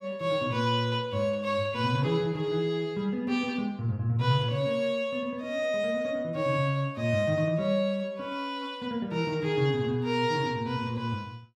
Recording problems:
none

